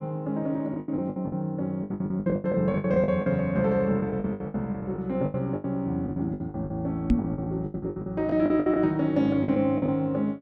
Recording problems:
packet loss; 18% of the sound replaced, filled with the last packet
knock on the microphone; at 7 s; peak +8 dB vs average level

